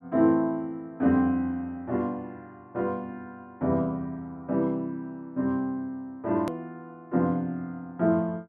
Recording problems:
click at an edit; at 6.5 s

